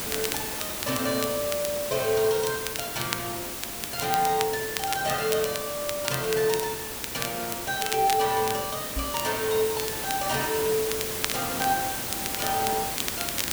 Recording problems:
background hiss; slope -2 dB per octave, SNR 3 dB
crackle; vinyl, SNR 7 dB
microphone thump; at 9 s; peak -1 dB vs average level

